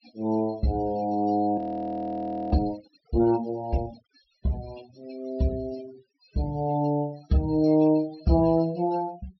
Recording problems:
low-pass filter; nothing above 5.7 kHz
noise reduction artefacts; signal-to-artefact ratio 23 dB
frozen audio; at 1.5 s for 1 s

